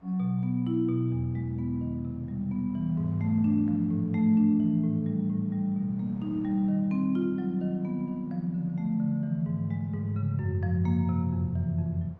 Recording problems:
wind noise; below 760 Hz, SNR 28 dB

